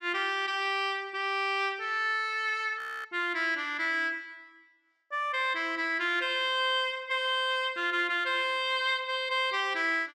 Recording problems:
frozen audio; at 3 s

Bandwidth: 14.5 kHz